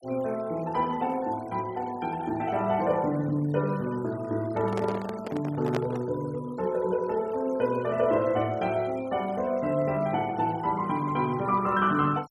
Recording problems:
noise reduction artefacts; signal-to-artefact ratio 24 dB
handling noise; from 4.5 to 6 s; peak +2 dB vs average level

